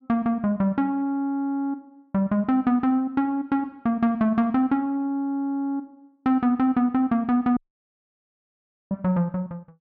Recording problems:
audio cutting out; at 7.5 s for 1.5 s

